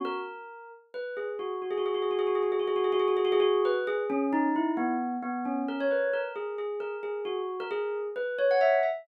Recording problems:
none

